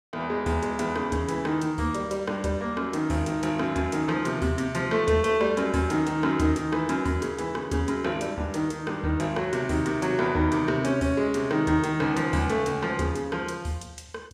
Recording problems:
none

